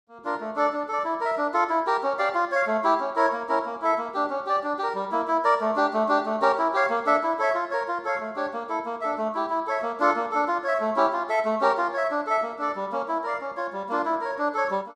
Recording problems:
none

